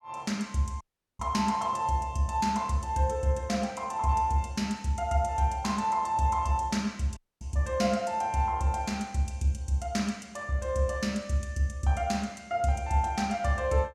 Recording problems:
dropout; at 1 s and at 7 s

